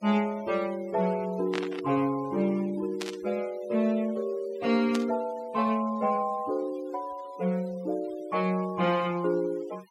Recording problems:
noise reduction artefacts; signal-to-artefact ratio 23 dB
static burst; at 1.5 s, at 3 s and at 5 s; peak -2 dB vs average level

